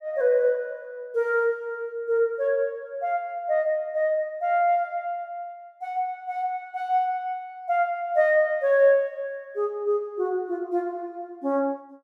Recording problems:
none

